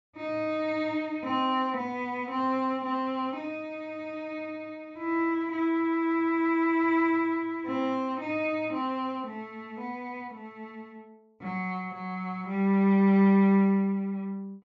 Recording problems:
treble cut off; nothing above 8 kHz

